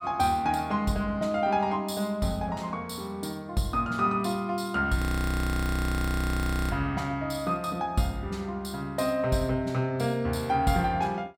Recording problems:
audio freezing; at 5 s for 1.5 s

